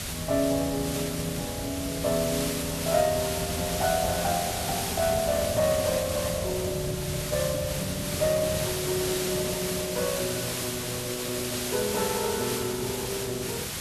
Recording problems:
lossy codec; Opus, log-spectral distance 2 dB
background hiss; slope -1 dB per octave, SNR 3 dB
low-frequency rumble; below 150 Hz, SNR 10 dB

